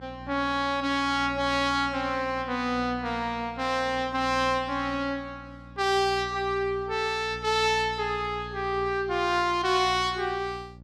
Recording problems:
hum; 60 Hz, harmonics up to 600 Hz, SNR 17 dB

